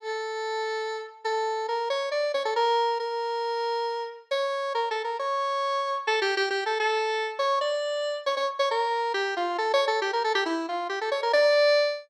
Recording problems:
none

